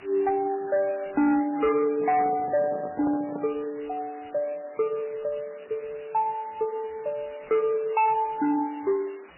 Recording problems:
lossy compression; MP3, log-spectral distance 8 dB, nothing above 2.4 kHz
distortion; hard clipping, signal-to-distortion ratio 12 dB
hiss; SNR 23 dB
microphone handling noise; from 2 to 3.5 s; peak -4 dB vs average level

